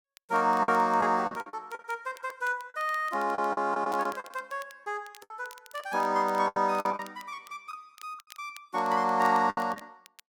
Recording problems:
crackling; vinyl, SNR 25 dB
lost packets; 11% of the sound replaced, filled with the last packet

